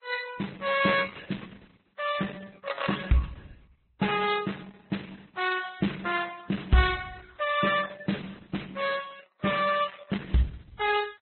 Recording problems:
lossy codec; Opus, then Vorbis, log-spectral distance 6 dB, nothing above 4 kHz

